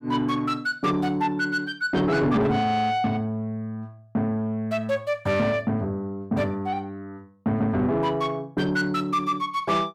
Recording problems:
distortion; soft clipping, signal-to-distortion ratio 11 dB

